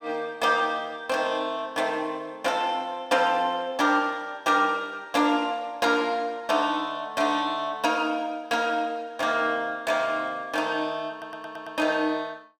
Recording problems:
stutter; at 11 s

